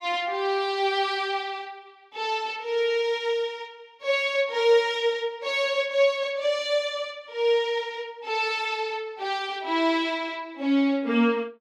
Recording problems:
none

